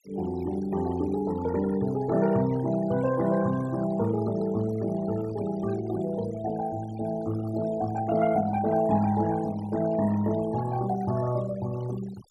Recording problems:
noise reduction artefacts; signal-to-artefact ratio 16 dB

